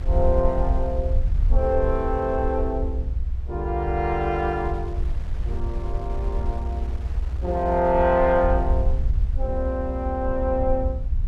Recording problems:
low-frequency rumble; below 64 Hz, SNR 3 dB
wind noise; below 940 Hz, SNR 21 dB

